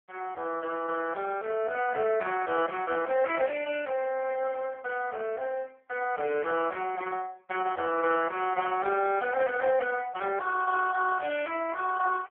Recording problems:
telephone audio; 240 Hz to 3.2 kHz, AMR-NB

